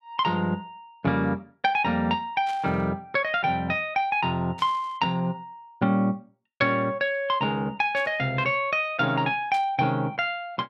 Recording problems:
burst of static; 4 times, first at 2.5 s; peak -13 dB vs average level

